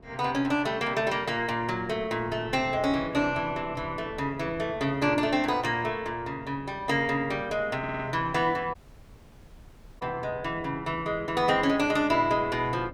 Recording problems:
wind on the microphone; below 420 Hz, SNR 19 dB
audio stuttering; at 8 s
audio cutting out; at 8.5 s for 1.5 s

